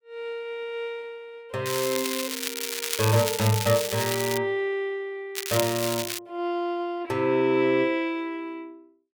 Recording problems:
crackle; from 1.5 to 4.5 s and at 5.5 s; loose cable, SNR 3 dB

